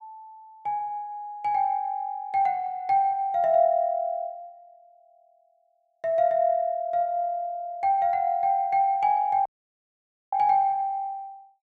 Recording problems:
dropout; at 9.5 s for 1 s

